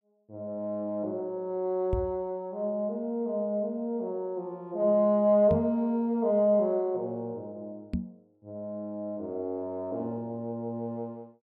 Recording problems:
knock on the microphone; at 2 s, at 5.5 s and at 8 s; peak +2 dB vs average level

